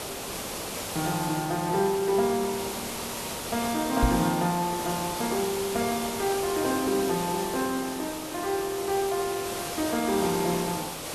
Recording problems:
background hiss; SNR 5 dB
microphone thump; at 4 s; peak +6 dB vs average level

